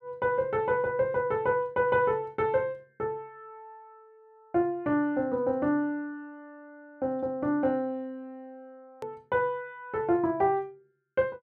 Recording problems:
click at an edit; at 9 s

